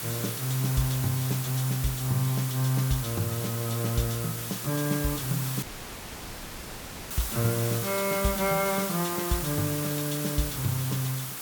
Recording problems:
hiss; slope -1 dB per octave, SNR 4 dB
audio cutting out; at 5.5 s for 1.5 s

